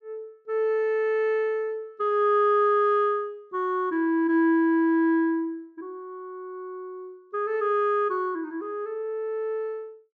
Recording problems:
treble cut off; nothing above 8 kHz

